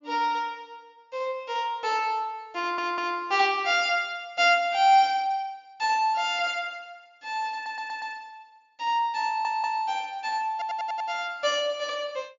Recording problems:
treble missing; nothing above 7.2 kHz
audio stuttering; 4 times, first at 2.5 s

